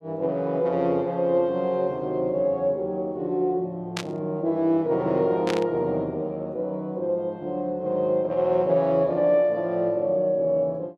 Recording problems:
burst of static; at 4 s and at 5.5 s; peak -1 dB vs average level

